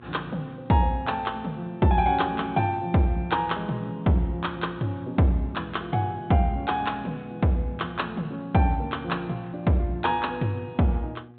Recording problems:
treble missing; nothing above 4 kHz
hum; 60 Hz, harmonics up to 1.2 kHz, SNR 21 dB

